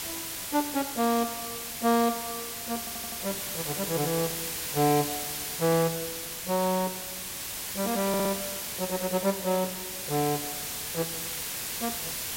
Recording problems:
background hiss; slope 0 dB per octave, SNR 3 dB
stutter; at 3 s and at 8 s

